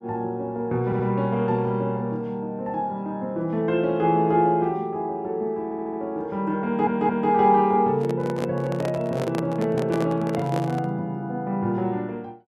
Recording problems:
audio stuttering; at 1 s, at 5.5 s and at 6.5 s
microphone handling noise; from 8 to 11 s; peak -2 dB vs average level

